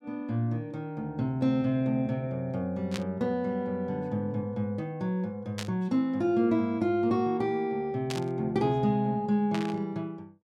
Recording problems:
static burst; 4 times, first at 3 s; peak -2 dB vs average level

